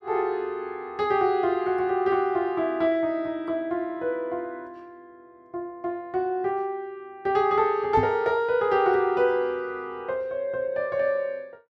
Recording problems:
microphone bump; at 8 s; peak -1 dB vs average level

